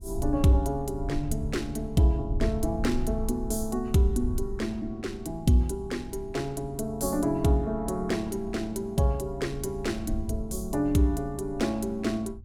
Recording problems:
wind noise; below 76 Hz, SNR 10 dB

